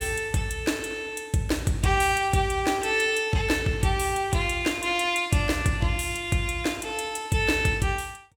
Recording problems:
none

